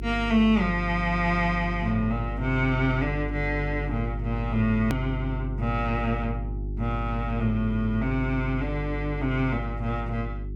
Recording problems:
electrical hum; 50 Hz, harmonics up to 400 Hz, SNR 6 dB
edit click; at 5 s

